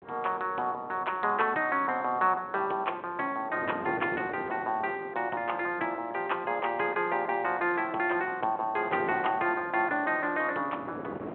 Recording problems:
phone line; 280 Hz to 3.4 kHz, G.726
wind on the microphone; below 730 Hz, SNR 15 dB

